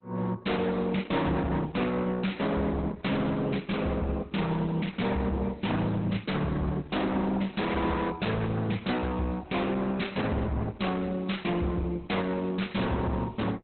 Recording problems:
lossy codec; Opus, log-spectral distance 5 dB, nothing above 4.1 kHz
distorted audio; hard clipping, uneven, signal-to-distortion ratio 6 dB

